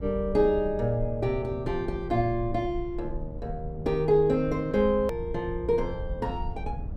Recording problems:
low-frequency rumble; below 84 Hz, SNR 11 dB
click at an edit; at 5 s

